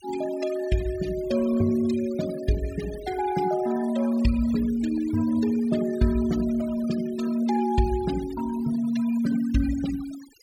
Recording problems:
denoising artefacts; signal-to-artefact ratio 15 dB

